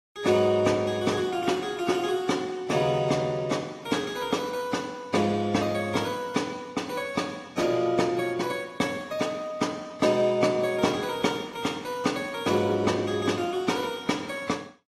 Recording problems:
lossy codec; AAC, log-spectral distance 3 dB, nothing above 13.8 kHz

